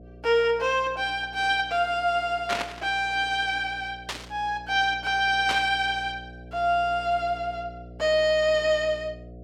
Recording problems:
electrical hum; 60 Hz, harmonics up to 720 Hz, SNR 21 dB
burst of static; at 2.5 s, at 4 s and at 5.5 s; peak 0 dB vs average level

